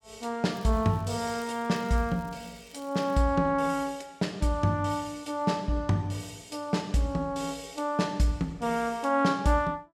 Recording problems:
crackling; until 3 s; loose cable, SNR 27 dB

